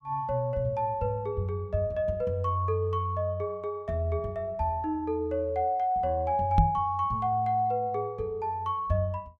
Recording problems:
microphone bump; at 6.5 s; peak +8 dB vs average level

